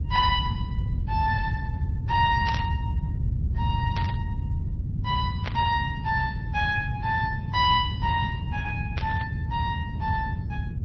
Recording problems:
codec artefacts; MP3, then Opus, log-spectral distance 2 dB, nothing above 4.9 kHz
low-frequency rumble; below 130 Hz, SNR 1 dB
static burst; 4 times, first at 2.5 s; peak -3 dB vs average level

